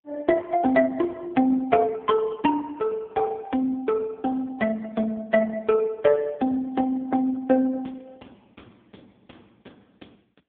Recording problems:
telephone audio; 170 Hz to 3.1 kHz, AMR-NB

